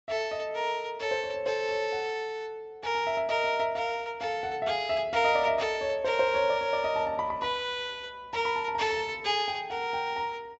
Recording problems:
treble missing; nothing above 8 kHz

